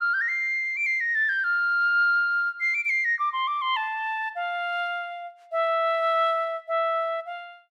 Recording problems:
none

